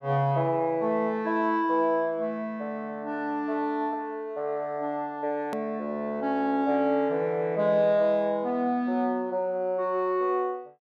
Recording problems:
click at an edit; at 5.5 s

